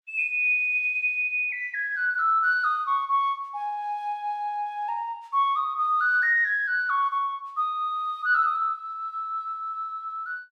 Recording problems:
none

